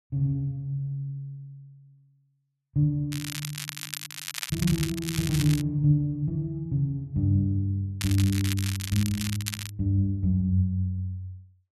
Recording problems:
crackling; from 3 to 5.5 s and from 8 to 9.5 s; loose cable, SNR 7 dB

